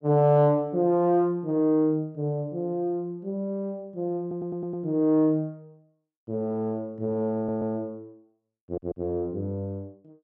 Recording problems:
audio stuttering; at 4 s, at 7.5 s and at 8.5 s

